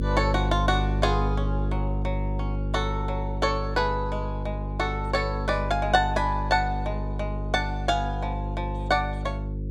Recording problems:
hum; 50 Hz, harmonics up to 550 Hz, SNR 2 dB

